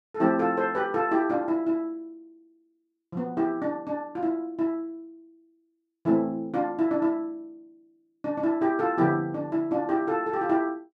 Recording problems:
none

